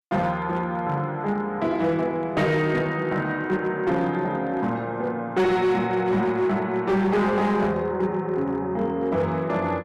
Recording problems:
distorted audio; hard clipping, uneven, signal-to-distortion ratio 11 dB

